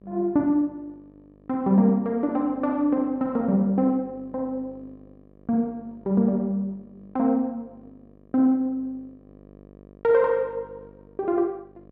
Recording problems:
electrical hum; 50 Hz, harmonics up to 1.2 kHz, SNR 27 dB

